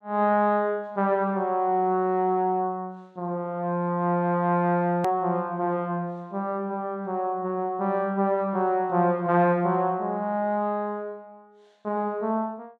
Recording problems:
hard cut with a click; at 5 s

